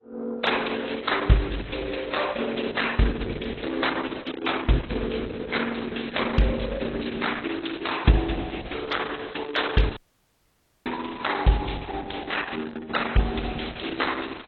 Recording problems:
lossy codec; Opus, then AAC, log-spectral distance 8 dB
audio cutting out; at 10 s for 1 s

